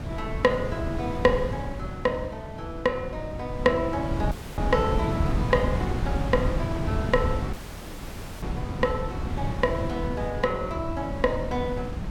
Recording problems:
wind on the microphone; below 200 Hz, SNR 3 dB
audio cutting out; at 4.5 s and at 7.5 s for 1 s

